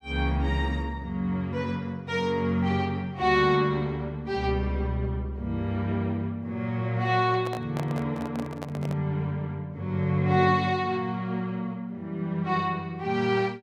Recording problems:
handling noise; from 7.5 to 9 s; peak -4 dB vs average level

